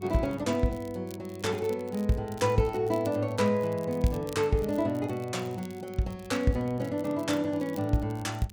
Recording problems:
electrical hum; 50 Hz, harmonics up to 500 Hz, SNR 19 dB
crackling; vinyl, SNR 23 dB

